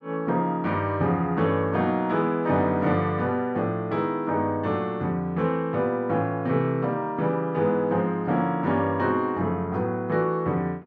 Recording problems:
none

